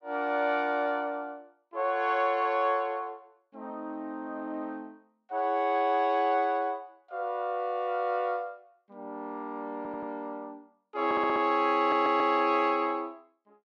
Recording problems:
stutter; at 10 s, at 11 s and at 12 s

